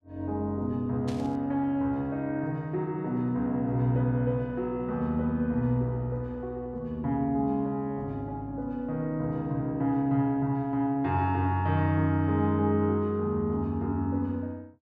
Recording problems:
burst of static; at 1 s; peak -11 dB vs average level

